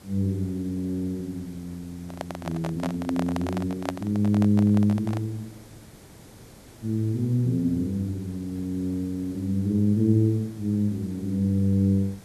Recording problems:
hiss; SNR 22 dB
microphone handling noise; from 2 to 5.5 s; peak 0 dB vs average level

